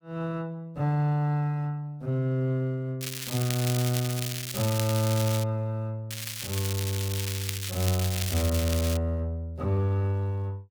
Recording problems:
crackling; from 3 to 5.5 s and from 6 to 9 s; loose cable, SNR 5 dB

